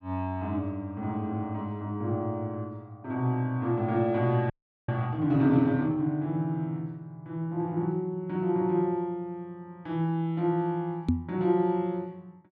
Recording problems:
audio freezing; at 4.5 s
microphone thump; at 11 s; peak +7 dB vs average level

